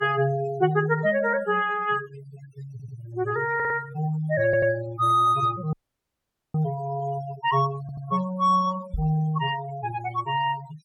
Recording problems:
noise reduction artefacts; signal-to-artefact ratio 17 dB
stutter; 4 times, first at 2.5 s
dropout; at 5.5 s for 1 s
microphone bump; at 9 s; peak -2 dB vs average level

